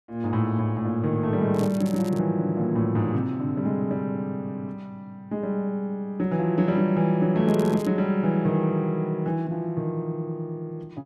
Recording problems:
crackle; at 1.5 s and at 7.5 s; loose cable, SNR 21 dB

